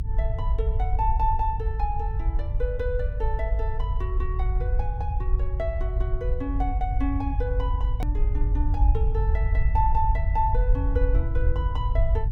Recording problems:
rumble; below 70 Hz, SNR -5 dB
click at an edit; at 8 s

